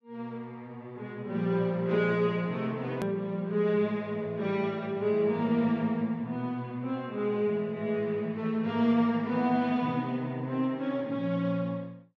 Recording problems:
hard cut with a click; at 3 s

